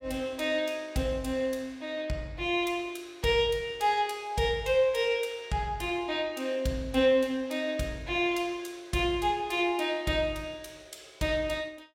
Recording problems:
none

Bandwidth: 16 kHz